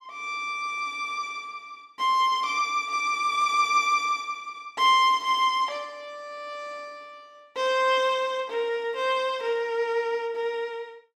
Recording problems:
none

